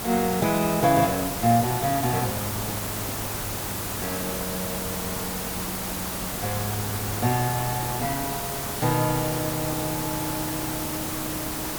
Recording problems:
hiss; slope -4 dB per octave, SNR 1 dB

